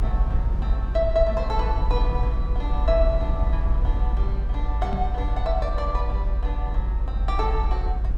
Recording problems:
rumble; below 54 Hz, strongest tone 52 Hz, SNR -3 dB
microphone thump; at 5 s; peak +2 dB vs average level

